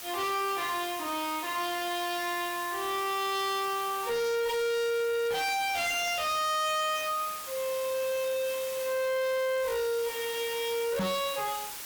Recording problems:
distortion; hard clipping, signal-to-distortion ratio 6 dB
background hiss; slope 0 dB per octave, SNR 10 dB
microphone bump; at 11 s; peak +4 dB vs average level

